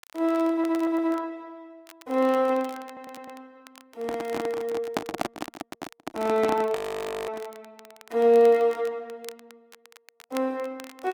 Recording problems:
codec artefacts; Opus, log-spectral distance 2 dB, nothing above 19 kHz
crackling; vinyl, SNR 24 dB
audio stuttering; at 0.5 s and at 3 s
handling noise; from 4 to 7.5 s; peak +3 dB vs average level
frozen audio; at 7 s for 0.5 s

